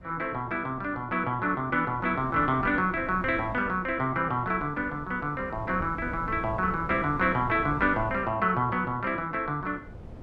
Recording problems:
wind noise; below 270 Hz, SNR 15 dB

